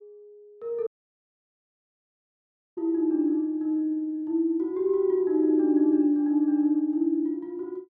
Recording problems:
dropout; at 1 s for 2 s

